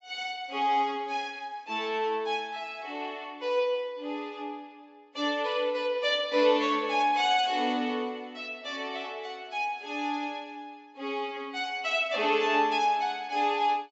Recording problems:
treble missing; nothing above 8 kHz

